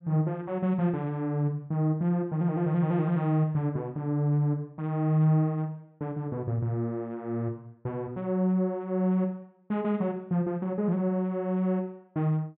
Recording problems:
treble cut off; nothing above 4 kHz

